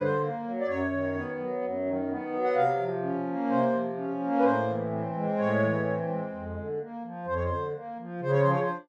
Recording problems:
none

